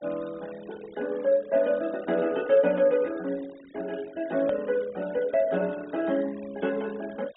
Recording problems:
treble cut off; nothing above 4 kHz
denoising artefacts; signal-to-artefact ratio 23 dB
edit click; at 4.5 s

